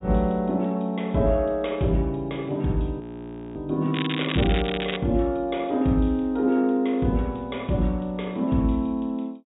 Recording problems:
low-pass filter; nothing above 4 kHz
frozen audio; at 3 s for 0.5 s
crackle; from 4 to 5 s; loose cable, SNR 7 dB

